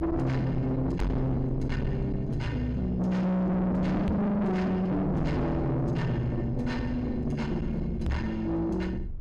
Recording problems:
distortion; soft clipping, signal-to-distortion ratio 5 dB
rumble; below 160 Hz, SNR 8 dB
microphone bump; at 1 s, at 4 s and at 8 s; peak +5 dB vs average level

